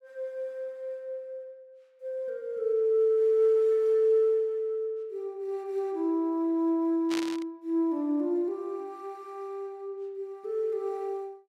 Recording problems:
static burst; at 7 s; peak -3 dB vs average level

